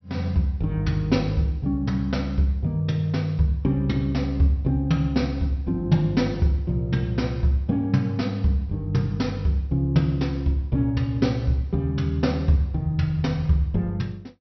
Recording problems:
treble missing; nothing above 5.9 kHz

